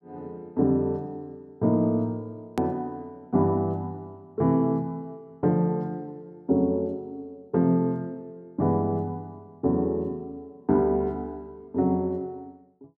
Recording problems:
click at an edit; at 2.5 s

